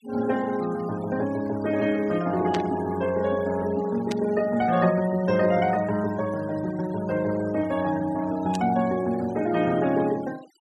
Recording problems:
noise reduction artefacts; signal-to-artefact ratio 19 dB
static burst; at 2.5 s, at 4 s and at 8.5 s; peak -4 dB vs average level

